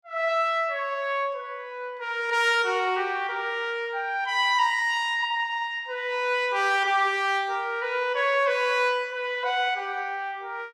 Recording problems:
none

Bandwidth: 15.5 kHz